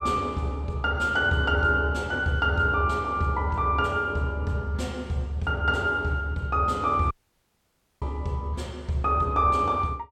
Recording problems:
dropout; at 7 s for 1 s

